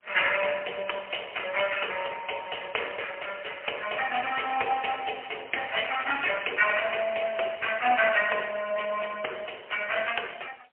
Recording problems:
phone line; 320 Hz to 3.1 kHz, AMR-NB, then MP3

